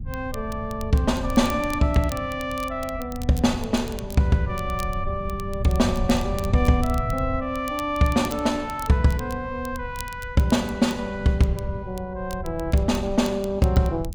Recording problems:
wind noise; below 100 Hz, SNR 11 dB
crackle; vinyl, SNR 20 dB

